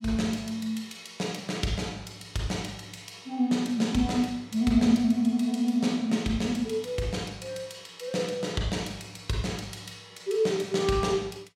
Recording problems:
none

